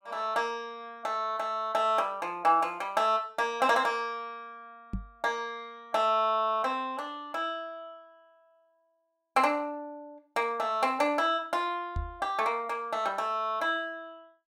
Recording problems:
knock on the microphone; at 5 s and at 12 s; peak -2 dB vs average level

